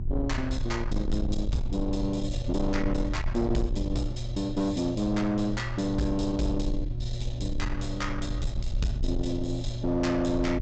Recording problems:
low-pass filter; nothing above 8 kHz
distortion; soft clipping, signal-to-distortion ratio 11 dB
hum; 60 Hz, harmonics up to 360 Hz, SNR 8 dB
low-frequency rumble; below 64 Hz, SNR 5 dB

